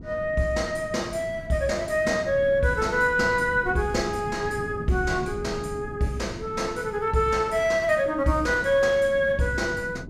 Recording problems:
wind on the microphone; below 250 Hz, SNR 14 dB

